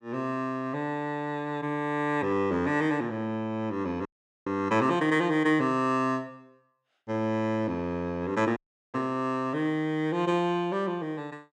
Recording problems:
dropout; at 4 s and at 8.5 s

